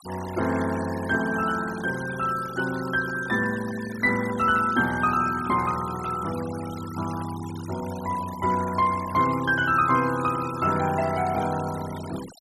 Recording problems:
denoising artefacts; signal-to-artefact ratio 15 dB

